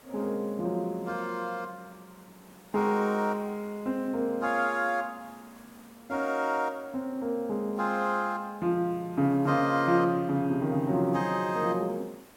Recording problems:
background hiss; slope -5 dB per octave, SNR 26 dB

